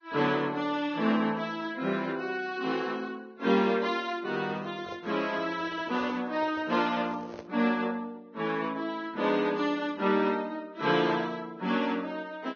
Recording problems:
codec artefacts; Vorbis, log-spectral distance 3 dB, nothing above 6.3 kHz
microphone handling noise; from 4.5 to 7.5 s; peak -9 dB vs average level

